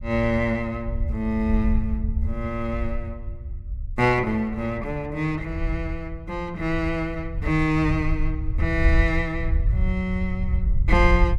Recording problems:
rumble; below 74 Hz, SNR 3 dB

